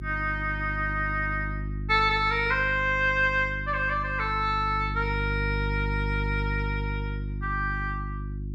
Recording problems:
hum; 50 Hz, harmonics up to 350 Hz, SNR 7 dB

